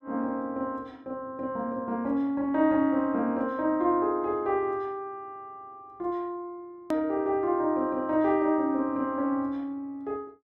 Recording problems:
click at an edit; at 7 s

